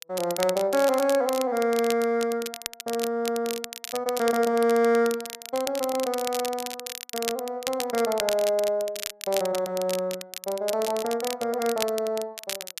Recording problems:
crackling; vinyl, SNR 9 dB

